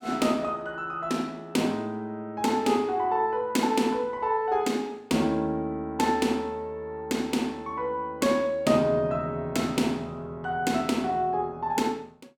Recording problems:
none

